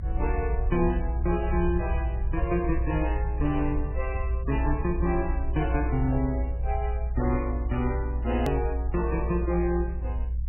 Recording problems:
lossy compression; MP3, log-spectral distance 2 dB, nothing above 16.1 kHz
low-frequency rumble; below 62 Hz, strongest tone 60 Hz, SNR 1 dB
hard cut with a click; at 8.5 s

